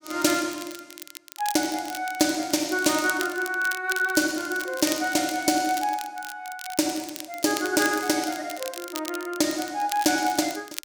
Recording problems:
crackle; vinyl, SNR 12 dB

